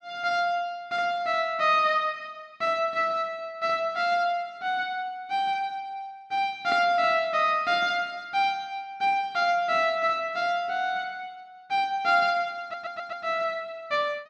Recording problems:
stutter; at 13 s

